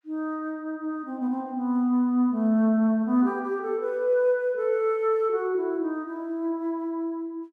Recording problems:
none

